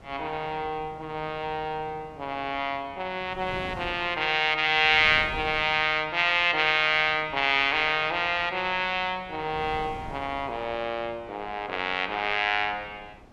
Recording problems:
wind noise; below 690 Hz, SNR 21 dB

